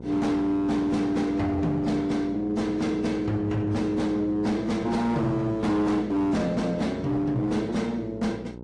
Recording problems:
lossy codec; AAC, log-spectral distance 2 dB
distorted audio; hard clipping, signal-to-distortion ratio 11 dB
hum; 60 Hz, harmonics up to 1 kHz, SNR 14 dB

